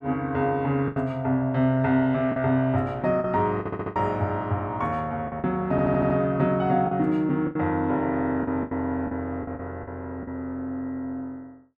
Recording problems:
packet loss; 7% of the sound replaced, filled with the last packet
audio stuttering; at 3.5 s and at 5.5 s

